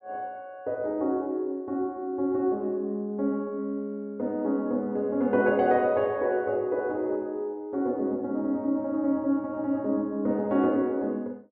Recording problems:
none

